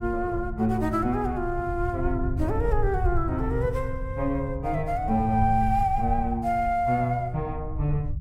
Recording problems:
rumble; below 92 Hz, SNR 7 dB

